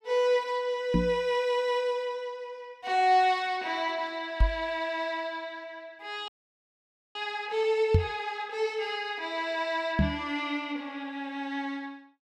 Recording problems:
microphone thump; 4 times, first at 1 s; peak +10 dB vs average level
audio freezing; at 6.5 s for 1 s

